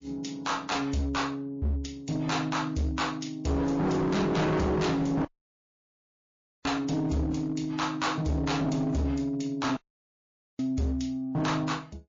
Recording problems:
codec artefacts; MP3, then MP3, log-spectral distance 3 dB, nothing above 6.7 kHz
distorted audio; hard clipping, uneven, signal-to-distortion ratio 7 dB
audio cutting out; at 5.5 s for 1.5 s and at 10 s for 1 s

